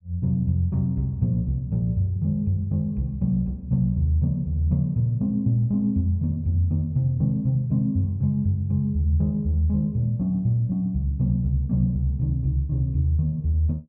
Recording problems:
none

